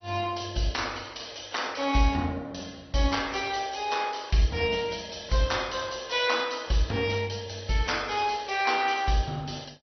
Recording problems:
lossy compression; AAC, then MP2, log-spectral distance 8 dB, nothing above 6 kHz

